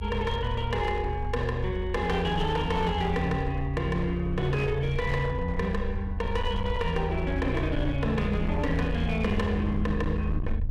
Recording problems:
distortion; hard clipping, uneven, signal-to-distortion ratio 11 dB
low-frequency rumble; below 80 Hz, SNR 5 dB

